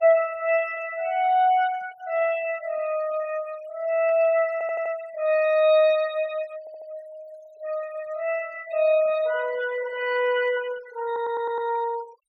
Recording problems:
denoising artefacts; signal-to-artefact ratio 21 dB
static burst; at 4 s; peak -22 dB vs average level
audio stuttering; at 4.5 s, at 6.5 s and at 11 s

